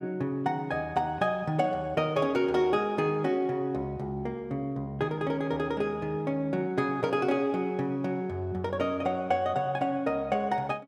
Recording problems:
none

